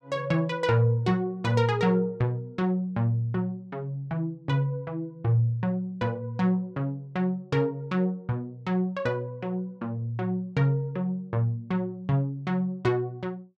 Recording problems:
none

